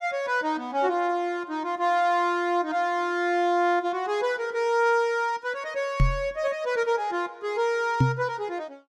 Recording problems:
microphone bump; at 6 s and at 8 s; peak +8 dB vs average level

